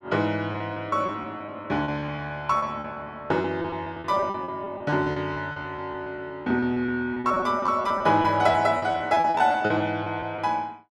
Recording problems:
packet loss; 16% of the sound replaced, filled with repeated pitch periods

